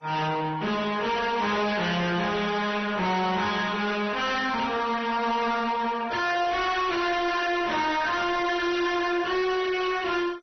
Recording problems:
lossy compression; Vorbis, then MP2, log-spectral distance 4 dB, nothing above 6 kHz
distorted audio; soft clipping, signal-to-distortion ratio 7 dB

